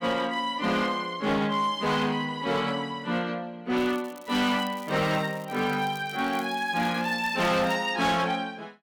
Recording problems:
distortion; hard clipping, signal-to-distortion ratio 12 dB
crackle; from 4 to 8 s; loose cable, SNR 22 dB

